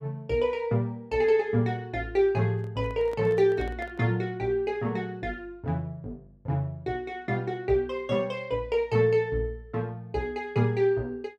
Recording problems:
handling noise; from 2.5 to 4 s; peak -11 dB vs average level

